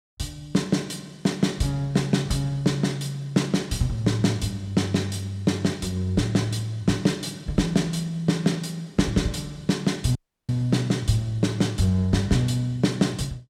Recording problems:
dropout; at 10 s

